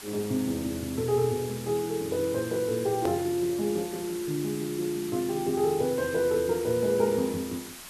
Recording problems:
background hiss; slope 0 dB per octave, SNR 13 dB
hard cut with a click; at 3 s

